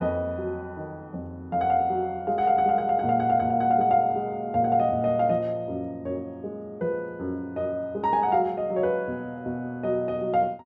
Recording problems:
none

